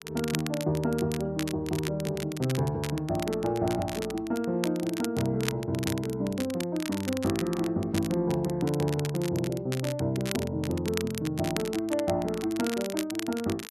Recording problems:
crackling; vinyl, SNR 10 dB

